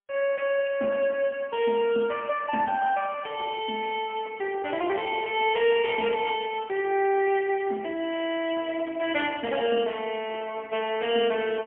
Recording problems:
telephone audio; 240 Hz to 3.2 kHz, AMR-NB, then MP3

